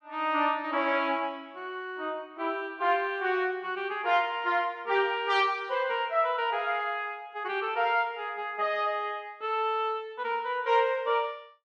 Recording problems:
none

